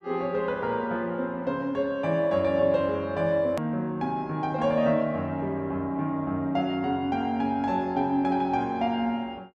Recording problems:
edit click; at 3.5 s

